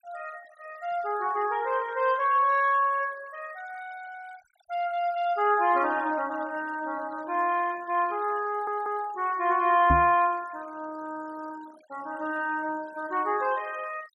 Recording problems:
noise reduction artefacts; signal-to-artefact ratio 23 dB
audio stuttering; at 8.5 s
microphone thump; at 10 s; peak +3 dB vs average level

